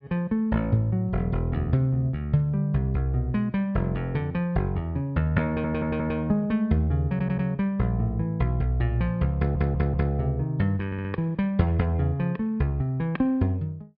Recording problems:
treble cut off; nothing above 5.5 kHz
stutter; 4 times, first at 5.5 s

